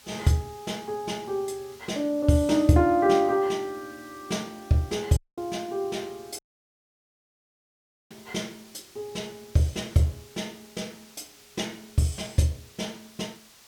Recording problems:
background hiss; slope +1 dB per octave, SNR 24 dB
audio cutting out; at 5 s and at 6.5 s for 1.5 s

